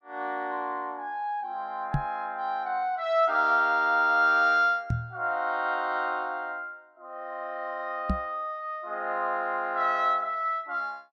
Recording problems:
knock on the microphone; at 2 s, at 5 s and at 8 s; peak +3 dB vs average level

